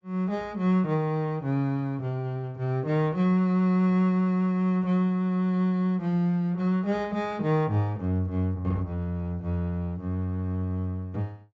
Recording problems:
low-pass filter; nothing above 7.5 kHz

